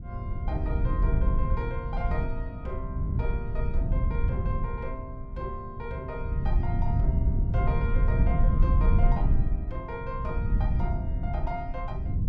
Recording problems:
wind noise; below 94 Hz, SNR -8 dB

